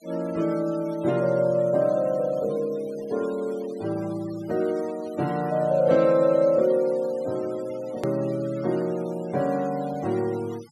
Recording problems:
noise reduction artefacts; signal-to-artefact ratio 22 dB
hard cut with a click; at 8 s

